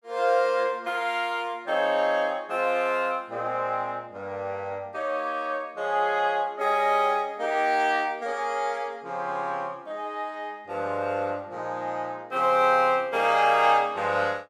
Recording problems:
none

